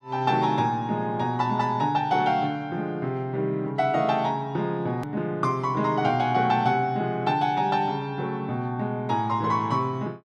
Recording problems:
hard cut with a click; at 5 s

